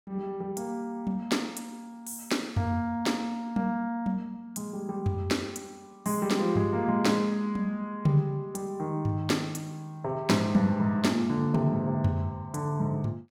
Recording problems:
none

